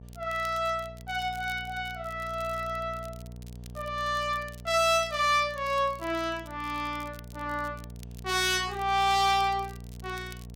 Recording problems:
mains hum; 60 Hz, harmonics up to 720 Hz, SNR 16 dB
crackle; vinyl, SNR 24 dB

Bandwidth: 16.5 kHz